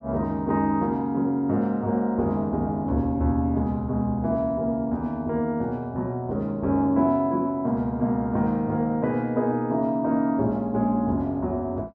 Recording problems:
none

